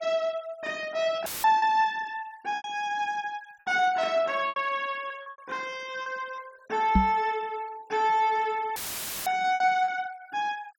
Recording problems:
denoising artefacts; signal-to-artefact ratio 25 dB
lost packets; 6% of the sound replaced, filled with repeated pitch periods
audio cutting out; at 1.5 s and at 9 s for 0.5 s; filled with static
microphone thump; at 7 s; peak +8 dB vs average level

